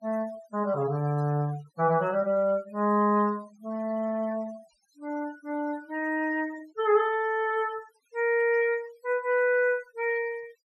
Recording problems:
denoising artefacts; signal-to-artefact ratio 23 dB

